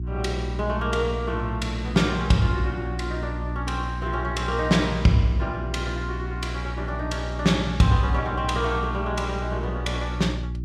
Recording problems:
hum; 60 Hz, harmonics up to 360 Hz, SNR 5 dB

